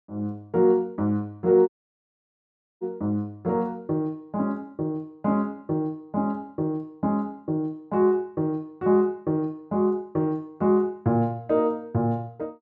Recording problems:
dropout; at 1.5 s for 1 s

